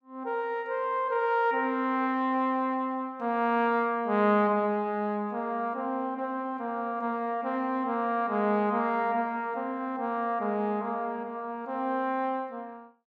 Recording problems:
none

